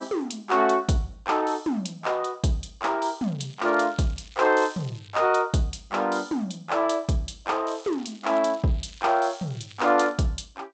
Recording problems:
lossy codec; G.722, log-spectral distance 6 dB, nothing above 8.2 kHz
crackling; from 3 to 5 s and from 7.5 to 10 s; loose cable, SNR 25 dB

